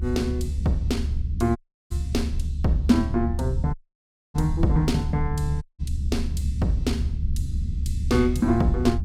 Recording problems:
rumble; below 76 Hz, strongest tone 72 Hz, SNR 3 dB
dropout; at 1.5 s, at 3.5 s for 0.5 s and at 5.5 s

